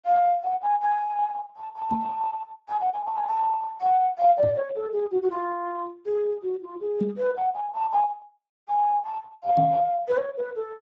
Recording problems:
lossy codec; Speex, log-spectral distance 2 dB
microphone bump; 4 times, first at 2 s; peak +3 dB vs average level

